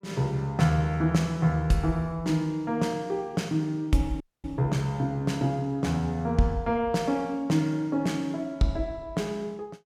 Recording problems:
dropout; at 4 s

